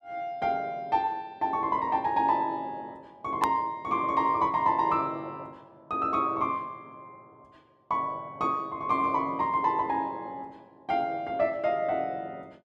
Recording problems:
click at an edit; at 3.5 s

